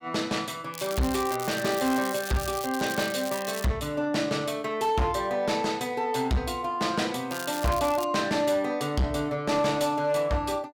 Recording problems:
distortion; hard clipping, signal-to-distortion ratio 11 dB
crackle; from 0.5 to 3.5 s and at 7.5 s; loose cable, SNR 11 dB

